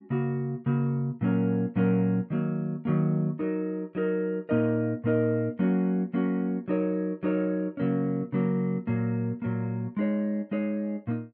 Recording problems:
none

